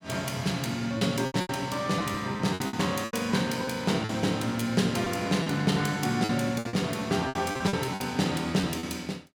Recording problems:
packet loss; 11% of the sound replaced, filled with repeated pitch periods

